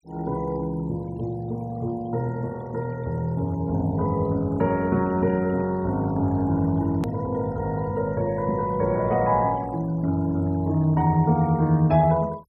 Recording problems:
noise reduction artefacts; signal-to-artefact ratio 25 dB
edit click; at 7 s

